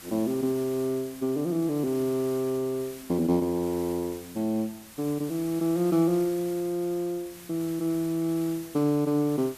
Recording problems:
hiss; slope -1 dB per octave, SNR 17 dB

